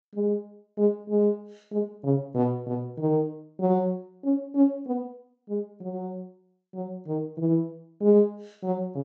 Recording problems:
treble cut off; nothing above 8 kHz

